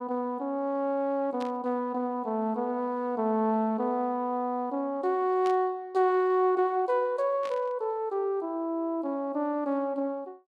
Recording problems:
burst of static; at 1.5 s, at 5.5 s and at 7.5 s; peak -10 dB vs average level

